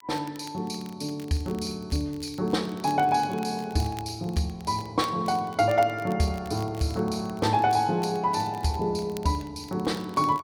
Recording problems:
crackle; vinyl, SNR 23 dB

